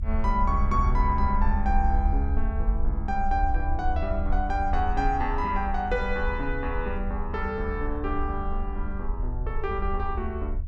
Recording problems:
low-frequency rumble; below 70 Hz, SNR 1 dB

